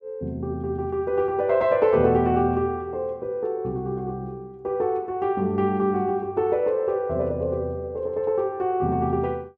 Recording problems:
none

